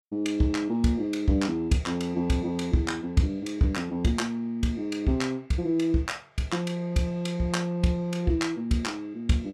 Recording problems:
none

